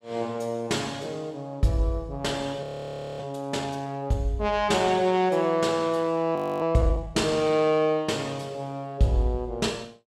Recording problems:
frozen audio; at 2.5 s for 0.5 s and at 6.5 s

